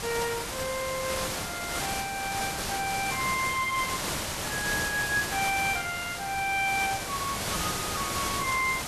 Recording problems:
background hiss; slope -2 dB per octave, SNR 1 dB

